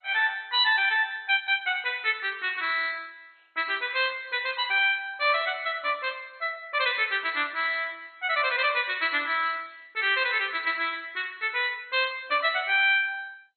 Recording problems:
lossy compression; MP2, log-spectral distance 4 dB, nothing above 3.7 kHz

